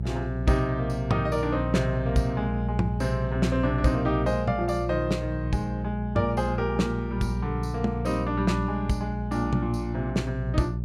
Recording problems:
hum; 60 Hz, harmonics up to 420 Hz, SNR 4 dB

